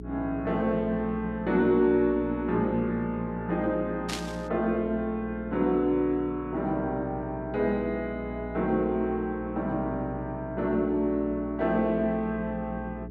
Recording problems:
hum; 60 Hz, harmonics up to 420 Hz, SNR 13 dB
burst of static; at 4 s; peak -1 dB vs average level

